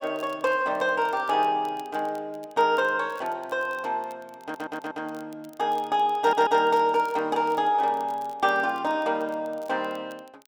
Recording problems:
crackling; vinyl, SNR 29 dB
stutter; at 4.5 s and at 6 s

